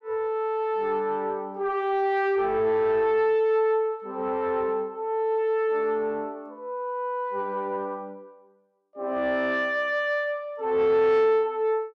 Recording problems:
distortion; soft clipping, signal-to-distortion ratio 11 dB

